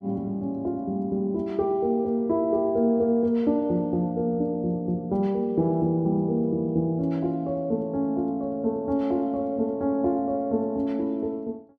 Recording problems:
none

